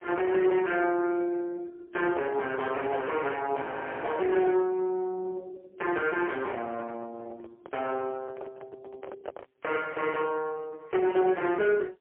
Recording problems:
telephone audio; 300 Hz to 3.2 kHz, AMR-NB, then MP3
distortion; soft clipping, signal-to-distortion ratio 10 dB
audio freezing; at 3.5 s
handling noise; from 6.5 to 9.5 s; peak -4 dB vs average level

